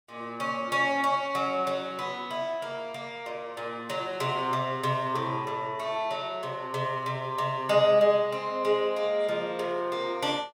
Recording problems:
none

